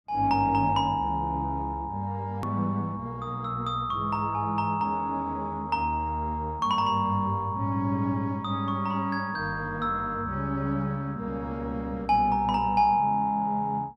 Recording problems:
edit click; at 2.5 s

